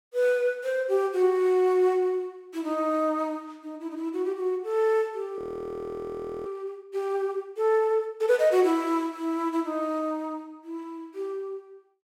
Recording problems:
audio freezing; at 5.5 s for 1 s

